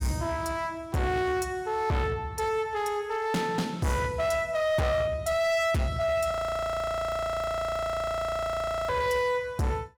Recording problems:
distortion; hard clipping, signal-to-distortion ratio 7 dB
audio freezing; at 6.5 s for 2.5 s

